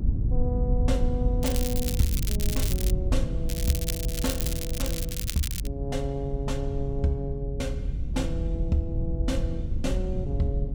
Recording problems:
rumble; below 92 Hz, SNR -2 dB
crackling; from 1.5 to 3 s and from 3.5 to 5.5 s; loose cable, SNR 1 dB

